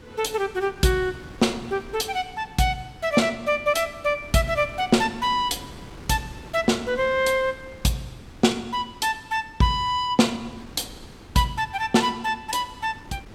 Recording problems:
wind noise; below 590 Hz, SNR 20 dB

